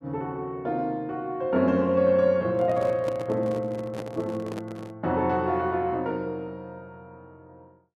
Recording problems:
handling noise; from 2.5 to 5 s; peak -5 dB vs average level

